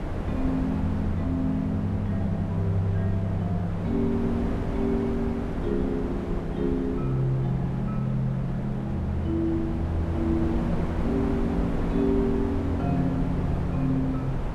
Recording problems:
wind noise; below 390 Hz, SNR 5 dB

